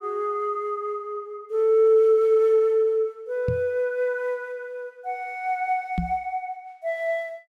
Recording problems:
microphone bump; at 3.5 s and at 6 s; peak +1 dB vs average level

